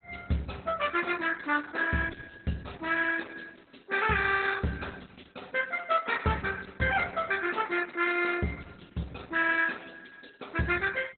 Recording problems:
lossy compression; MP2, then Opus, log-spectral distance 7 dB, nothing above 4 kHz

